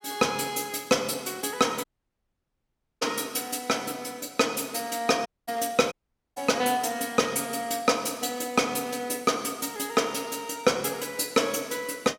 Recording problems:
audio cutting out; at 2 s for 1 s, at 5.5 s and at 6 s

